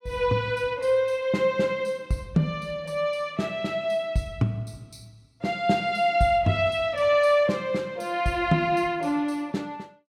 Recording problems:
none

